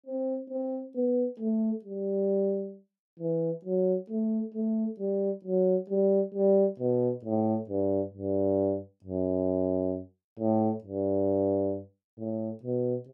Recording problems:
none

